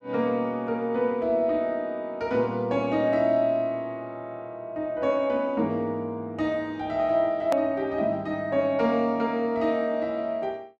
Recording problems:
click at an edit; at 7.5 s

